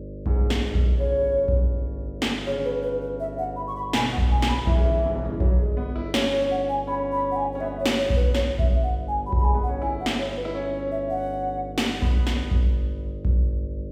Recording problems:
hum; 50 Hz, harmonics up to 600 Hz, SNR 13 dB

